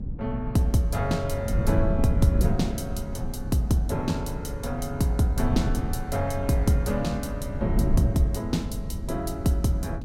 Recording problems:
wind on the microphone; below 140 Hz, SNR 4 dB

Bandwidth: 16.5 kHz